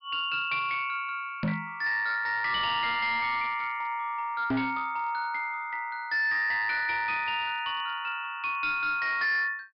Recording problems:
low-pass filter; nothing above 5.2 kHz
distortion; hard clipping, signal-to-distortion ratio 11 dB
knock on the microphone; at 1.5 s and at 4.5 s; peak +3 dB vs average level

